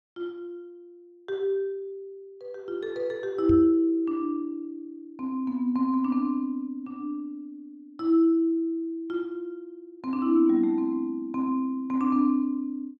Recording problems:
knock on the microphone; at 3.5 s; peak -1 dB vs average level

